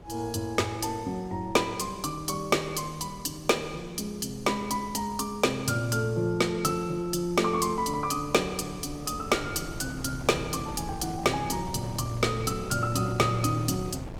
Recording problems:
wind on the microphone; below 370 Hz, SNR 15 dB

